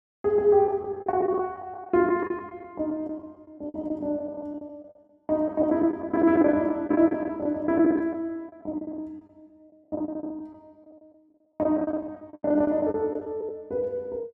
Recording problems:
packet loss; 15% of the sound replaced, filled with the last packet

